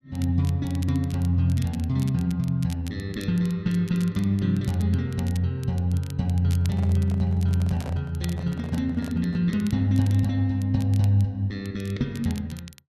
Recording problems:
crackling; vinyl, SNR 22 dB
microphone handling noise; from 6.5 to 9.5 s; peak -11 dB vs average level

